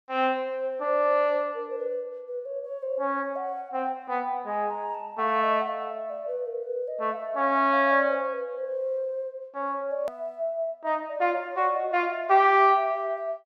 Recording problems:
hard cut with a click; at 10 s

